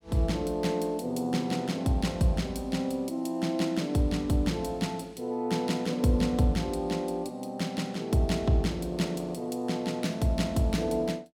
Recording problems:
none

